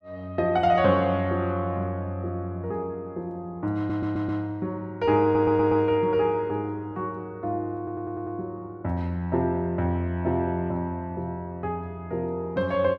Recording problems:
audio stuttering; at 4 s, at 5 s and at 8 s

